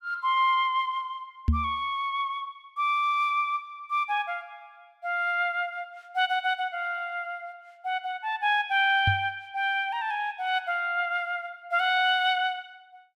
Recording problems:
microphone thump; at 1.5 s and at 9 s; peak +6 dB vs average level

